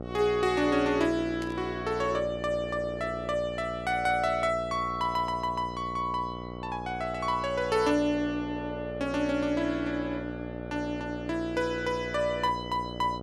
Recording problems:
hum; 60 Hz, harmonics up to 1.4 kHz, SNR 9 dB
burst of static; at 1.5 s; peak -10 dB vs average level

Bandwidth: 13.5 kHz